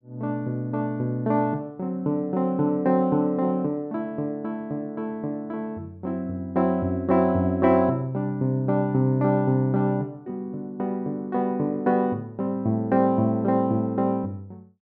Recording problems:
none

